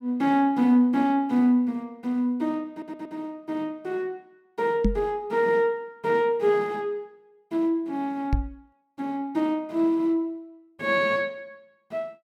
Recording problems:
stutter; at 2.5 s
microphone bump; at 5 s and at 8.5 s; peak +6 dB vs average level

